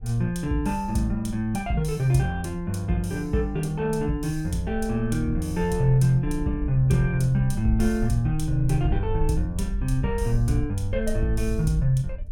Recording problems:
wind on the microphone; below 58 Hz, SNR 10 dB

